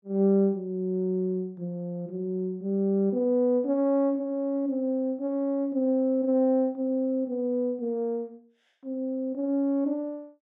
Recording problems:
none

